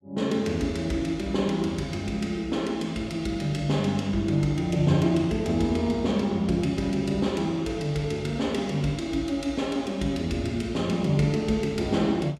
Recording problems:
none

